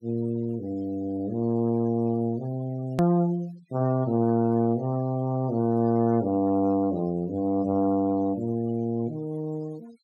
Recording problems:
denoising artefacts; signal-to-artefact ratio 25 dB
click at an edit; at 3 s

